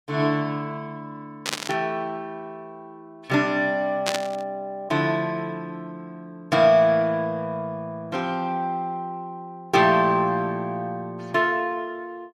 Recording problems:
static burst; at 1.5 s and at 4 s; peak +3 dB vs average level

